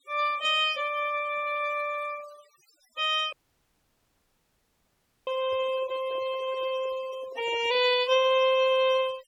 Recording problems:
denoising artefacts; signal-to-artefact ratio 19 dB
audio cutting out; at 3.5 s for 2 s
handling noise; from 5.5 to 8 s; peak -13 dB vs average level

